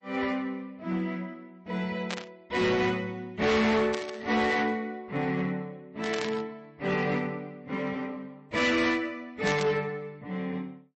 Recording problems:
codec artefacts; MP3, log-spectral distance 2 dB, nothing above 7.8 kHz
distortion; hard clipping, uneven, signal-to-distortion ratio 7 dB
burst of static; 4 times, first at 2 s; peak -1 dB vs average level

